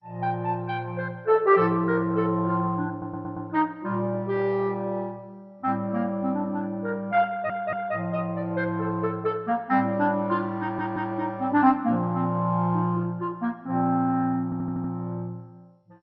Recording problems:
lossy codec; MP2, log-spectral distance 2 dB, nothing above 5 kHz
audio stuttering; 4 times, first at 3 s

